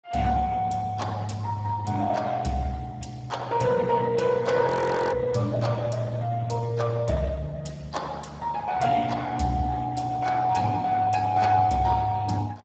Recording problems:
lossy codec; Speex, log-spectral distance 4 dB, nothing above 7.6 kHz
frozen audio; at 4.5 s

